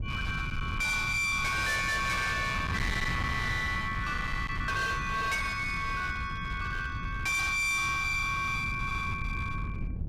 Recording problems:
distortion; hard clipping, signal-to-distortion ratio 7 dB
wind on the microphone; below 240 Hz, SNR 7 dB

